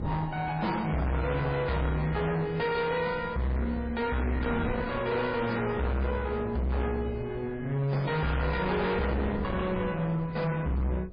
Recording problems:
codec artefacts; MP3, log-spectral distance 2 dB, nothing above 4.8 kHz
distorted audio; hard clipping, uneven, signal-to-distortion ratio 5 dB
wind on the microphone; below 420 Hz, SNR 11 dB

